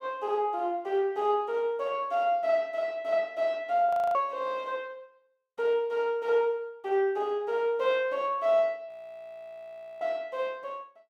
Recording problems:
frozen audio; at 4 s and at 9 s for 1 s

